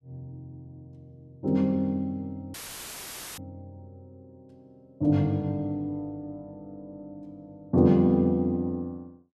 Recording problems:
dropout; at 2.5 s for 1 s; filled with static

